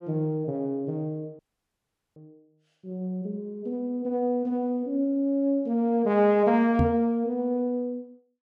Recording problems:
dropout; at 1.5 s for 1 s
knock on the microphone; at 7 s; peak +5 dB vs average level

